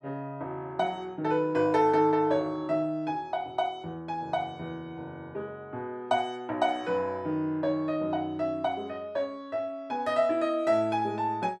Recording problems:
none

